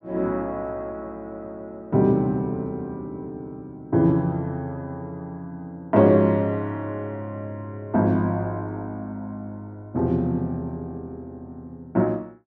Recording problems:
none

